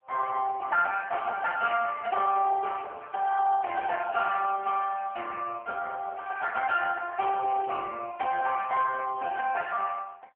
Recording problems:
phone line; 260 Hz to 2.3 kHz, AMR-NB

